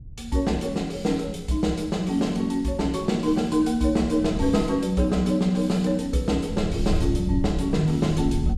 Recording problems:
wind on the microphone; below 98 Hz, SNR 11 dB

